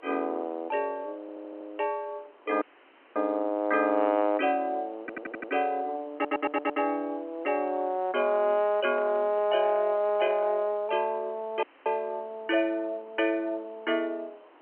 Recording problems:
phone line; 260 Hz to 3.2 kHz, G.711
background hiss; SNR 27 dB
audio stuttering; at 1 s, at 5 s and at 6 s
dropout; at 2.5 s for 0.5 s and at 12 s
microphone handling noise; from 8.5 to 11 s; peak -9 dB vs average level

